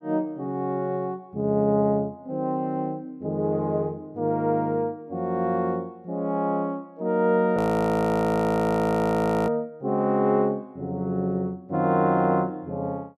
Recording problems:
audio freezing; at 7.5 s for 2 s

